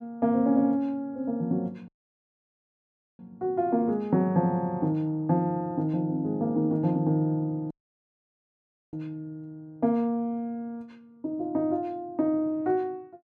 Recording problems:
dropout; at 2 s for 1.5 s and at 7.5 s for 1 s

